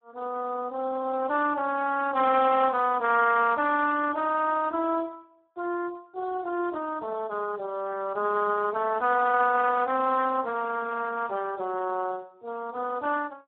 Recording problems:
telephone audio; 220 Hz to 2.3 kHz, Speex

